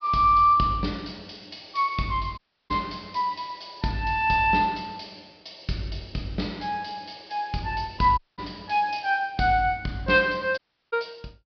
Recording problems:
low-pass filter; nothing above 5.5 kHz
audio cutting out; at 2.5 s, at 8 s and at 11 s

